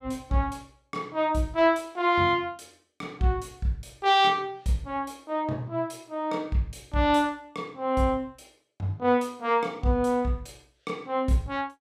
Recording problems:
none

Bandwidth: 15 kHz